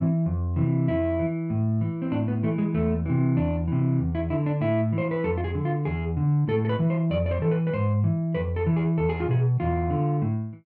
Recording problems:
none

